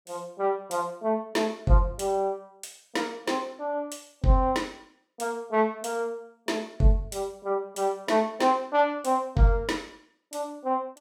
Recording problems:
none

